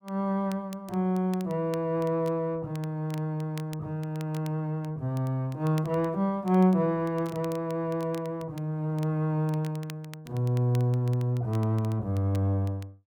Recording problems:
crackle; vinyl, SNR 24 dB

